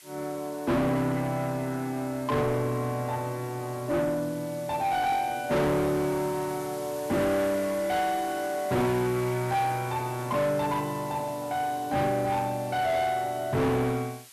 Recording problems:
distorted audio; soft clipping, signal-to-distortion ratio 7 dB
background hiss; slope +4 dB per octave, SNR 18 dB

